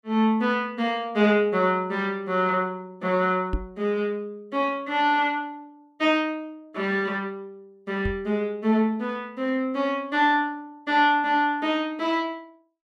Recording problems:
knock on the microphone; at 3.5 s and at 8 s; peak 0 dB vs average level

